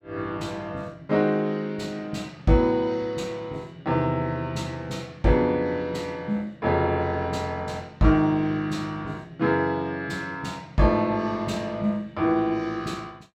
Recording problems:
none

